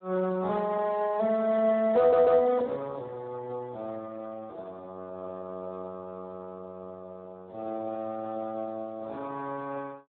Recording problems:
phone line; 300 Hz to 2 kHz, Speex
stutter; at 2 s

